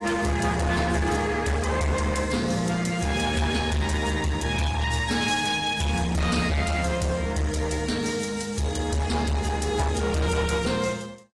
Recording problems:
codec artefacts; AAC, log-spectral distance 4 dB, nothing above 11 kHz
distorted audio; hard clipping, uneven, signal-to-distortion ratio 7 dB

